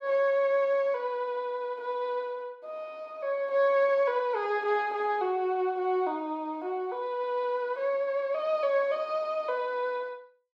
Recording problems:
none

